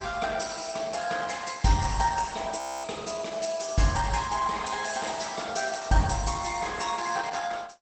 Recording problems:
codec artefacts; Opus, log-spectral distance 7 dB, nothing above 8 kHz
audio freezing; at 2.5 s

